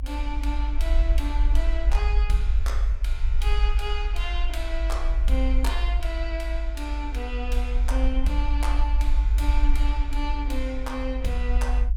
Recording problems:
low-frequency rumble; below 52 Hz, SNR -7 dB

